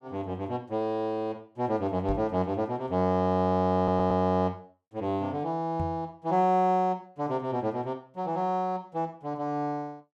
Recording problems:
microphone thump; at 2 s and at 6 s; peak -2 dB vs average level
audio stuttering; at 4 s

